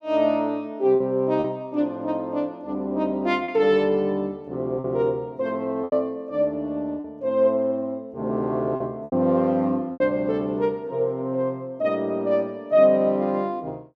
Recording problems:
lost packets; 3% of the sound replaced, filled with repeated pitch periods

